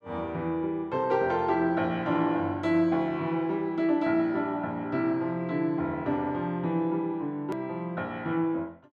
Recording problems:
hard cut with a click; at 7.5 s

